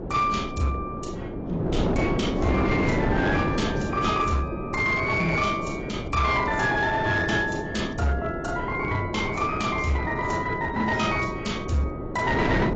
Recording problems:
lossy compression; AAC, log-spectral distance 3 dB, nothing above 7.3 kHz
distorted audio; hard clipping, uneven, signal-to-distortion ratio 11 dB
wind noise; below 480 Hz, SNR 4 dB

